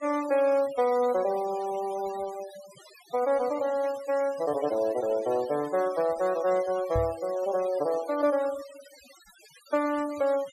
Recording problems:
denoising artefacts; signal-to-artefact ratio 19 dB
knock on the microphone; at 7 s; peak 0 dB vs average level

